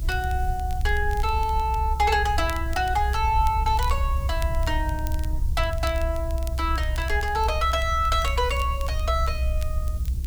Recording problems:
hiss; slope +2 dB per octave, SNR 23 dB
rumble; below 66 Hz, SNR 2 dB
crackle; vinyl, SNR 20 dB

